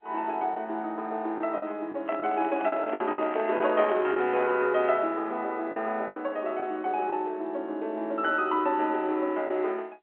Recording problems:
telephone audio; 280 Hz to 3.3 kHz, G.711
lost packets; 5% of the sound replaced, filled with the last packet
microphone handling noise; from 2 to 4.5 s; peak -4 dB vs average level

